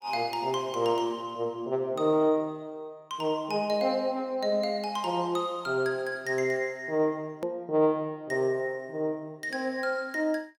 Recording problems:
hard cut with a click; at 7.5 s

